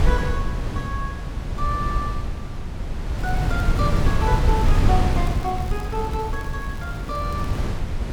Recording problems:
wind noise; below 130 Hz, SNR -4 dB
crackle; from 3 to 5 s and from 5 to 7.5 s; loose cable, SNR 19 dB

